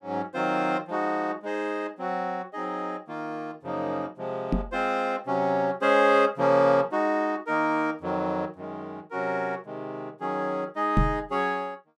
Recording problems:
knock on the microphone; at 4.5 s and at 11 s; peak +7 dB vs average level

